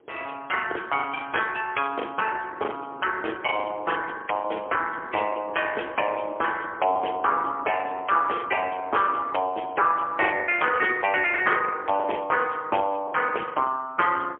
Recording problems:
phone line; 320 Hz to 3.2 kHz, AMR-NB, then MP3
wind on the microphone; below 540 Hz, SNR 18 dB
packet loss; 11% of the sound replaced, filled with the last packet

